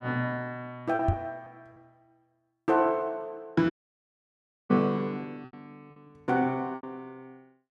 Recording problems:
packet loss; 4% of the sound replaced, filled with repeated pitch periods
microphone bump; at 1 s; peak +6 dB vs average level
audio cutting out; at 3.5 s for 1 s

